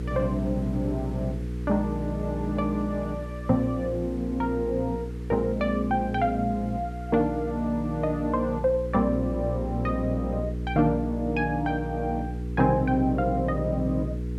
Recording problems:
hum; 60 Hz, harmonics up to 480 Hz, SNR 6 dB
background hiss; SNR 28 dB

